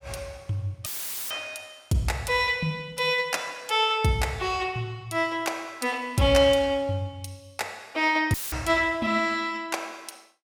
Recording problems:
dropout; at 1 s and at 8.5 s; filled with static

